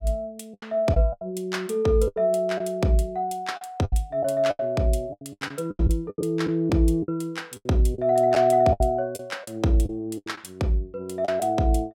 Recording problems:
packet loss; 11% of the sound replaced, filled with the last packet

